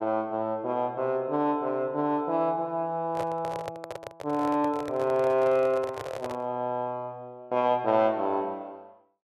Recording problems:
microphone handling noise; from 3 to 6.5 s; peak -4 dB vs average level

